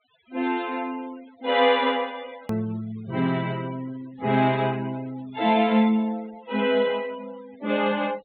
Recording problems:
low-pass filter; nothing above 4 kHz
noise reduction artefacts; signal-to-artefact ratio 23 dB
edit click; at 2.5 s

